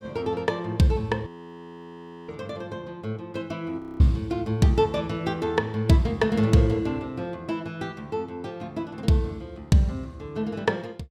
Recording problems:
frozen audio; at 1.5 s for 1 s and at 4 s

